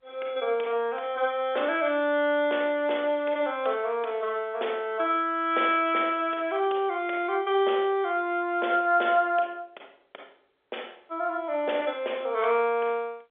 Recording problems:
telephone audio; 340 Hz to 3.6 kHz, G.711

